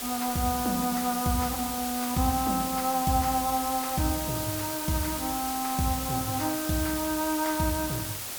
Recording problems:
background hiss; slope -1 dB per octave, SNR 3 dB

